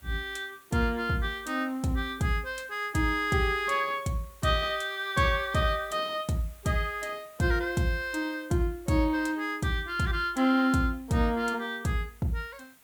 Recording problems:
hiss; slope -1 dB per octave, SNR 26 dB

